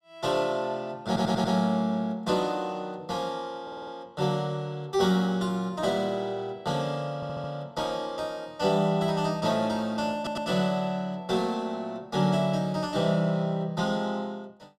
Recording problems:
audio stuttering; 4 times, first at 1 s

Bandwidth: 13.5 kHz